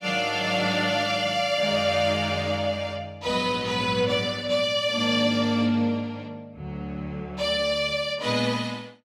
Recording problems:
none

